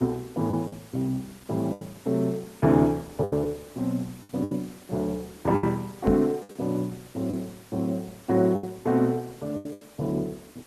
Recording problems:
lossy codec; Opus, log-spectral distance 5 dB
hiss; slope -2 dB per octave, SNR 23 dB
lost packets; 7% of the sound replaced, filled with the last packet
microphone bump; at 6 s; peak +6 dB vs average level

